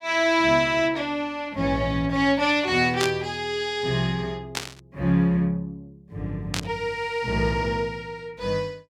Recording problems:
static burst; at 3 s, at 4.5 s and at 6.5 s; peak +1 dB vs average level

